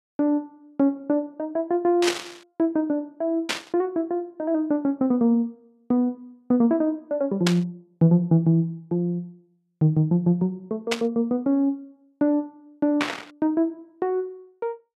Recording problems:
burst of static; 5 times, first at 2 s; peak +4 dB vs average level

